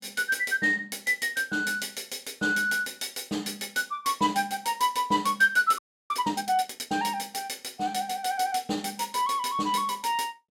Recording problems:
frozen audio; at 6 s

